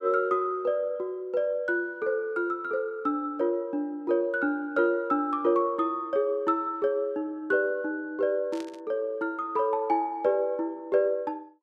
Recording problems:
burst of static; at 8.5 s; peak -13 dB vs average level

